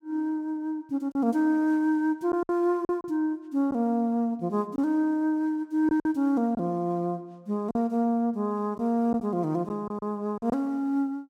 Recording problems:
lost packets; 4% of the sound replaced, filled with silence

